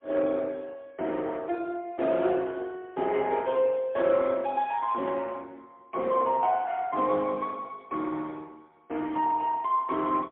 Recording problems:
phone line; 260 Hz to 3.6 kHz, AMR-NB, then MP3

